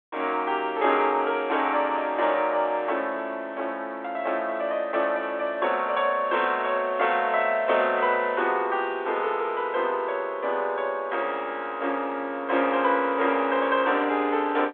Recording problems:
phone line; 240 Hz to 3.6 kHz, G.726

